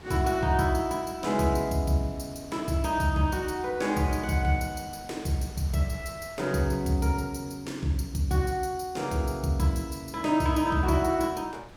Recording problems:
wind noise; below 1.5 kHz, SNR 23 dB

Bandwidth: 17 kHz